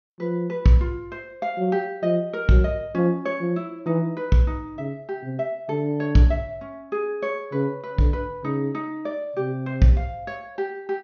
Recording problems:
low-pass filter; nothing above 6.5 kHz

